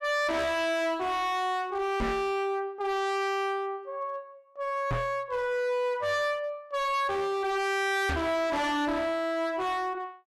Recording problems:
distorted audio; hard clipping, uneven, signal-to-distortion ratio 6 dB
microphone thump; at 2 s, at 5 s and at 8 s; peak +2 dB vs average level

